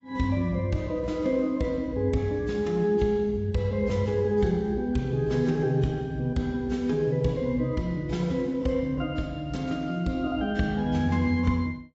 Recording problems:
lossy codec; AAC, log-spectral distance 2 dB, nothing above 7.6 kHz

